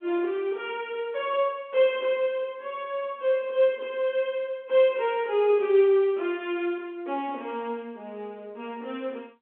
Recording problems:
phone line; 240 Hz to 3.5 kHz, G.711

